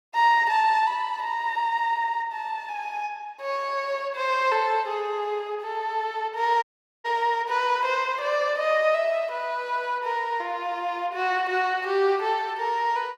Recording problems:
audio cutting out; at 6.5 s

